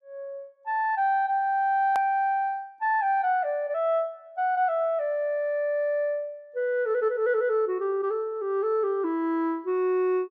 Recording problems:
hard cut with a click; at 2 s

